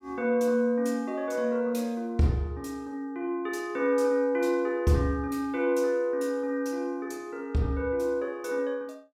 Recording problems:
none

